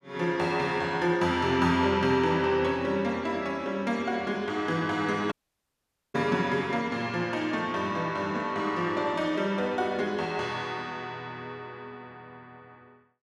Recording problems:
dropout; at 5.5 s for 1 s

